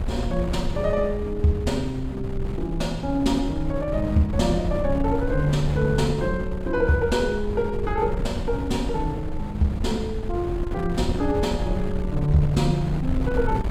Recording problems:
wind on the microphone; below 120 Hz, SNR 5 dB

